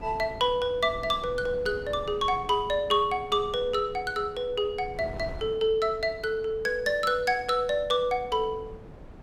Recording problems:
wind on the microphone; below 370 Hz, SNR 18 dB

